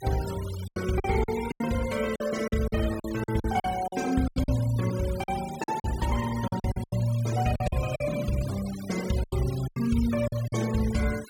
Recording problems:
noise reduction artefacts; signal-to-artefact ratio 14 dB
packet loss; 12% of the sound replaced, filled with silence

